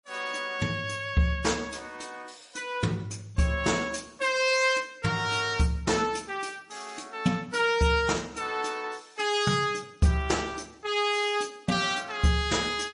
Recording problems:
codec artefacts; MP3, then MP3, log-spectral distance 4 dB, nothing above 10.4 kHz

